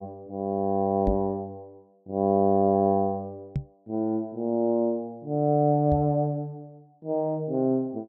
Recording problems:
microphone thump; at 1 s, at 3.5 s and at 6 s; peak +1 dB vs average level

